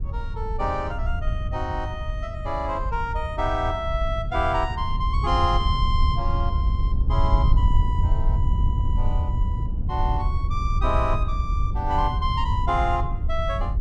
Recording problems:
wind noise; below 82 Hz, SNR -2 dB

